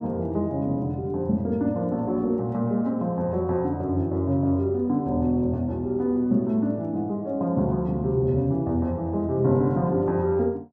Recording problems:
none

